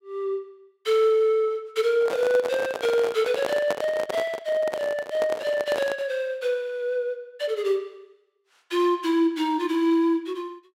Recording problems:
microphone handling noise; from 2 to 6 s; peak +1 dB vs average level

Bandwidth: 16 kHz